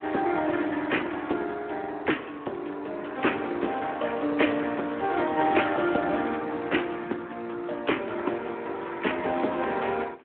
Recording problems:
telephone audio; 240 Hz to 3.3 kHz, Speex

